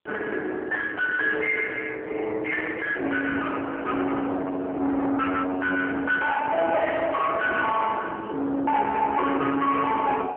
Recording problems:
phone line; 300 Hz to 3.4 kHz, AMR-NB
distorted audio; soft clipping, signal-to-distortion ratio 7 dB
wind on the microphone; below 1.5 kHz, SNR 17 dB

